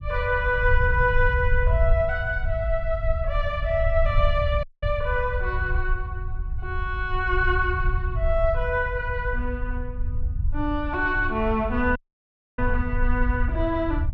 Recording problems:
rumble; below 72 Hz, SNR 3 dB
audio cutting out; at 4.5 s and at 12 s for 0.5 s

